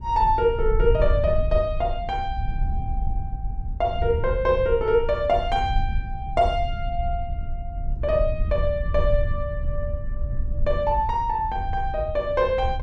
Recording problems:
rumble; below 70 Hz, SNR 5 dB

